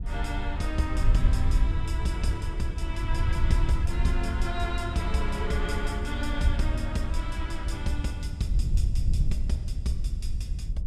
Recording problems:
wind noise; below 76 Hz, SNR -4 dB

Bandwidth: 14.5 kHz